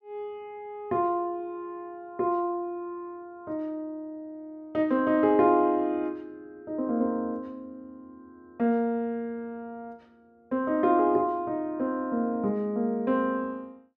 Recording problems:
none

